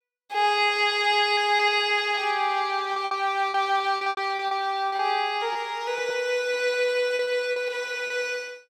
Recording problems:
lost packets; 8% of the sound replaced, filled with repeated pitch periods

